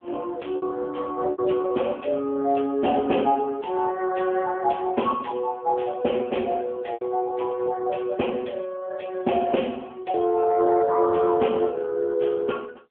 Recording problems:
telephone audio; 260 Hz to 3.3 kHz, AMR-NB
packet loss; 3% of the sound replaced, filled with repeated pitch periods

